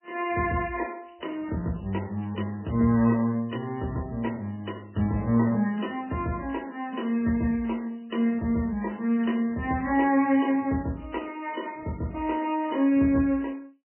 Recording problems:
lossy codec; MP3, log-spectral distance 5 dB, nothing above 2.9 kHz

